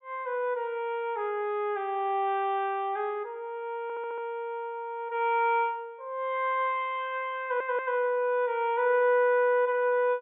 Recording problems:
treble missing; nothing above 4 kHz
stutter; at 4 s and at 7.5 s

